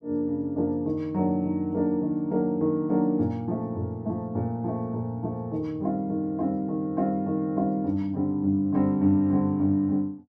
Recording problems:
none

